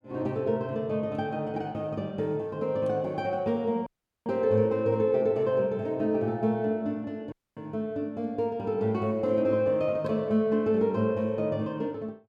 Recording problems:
dropout; at 4 s and at 7.5 s

